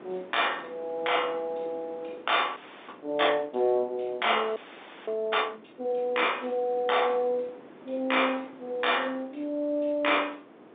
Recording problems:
telephone audio; 220 Hz to 3.7 kHz, G.711
wind noise; below 820 Hz, SNR 21 dB
frozen audio; at 2.5 s and at 4.5 s for 0.5 s

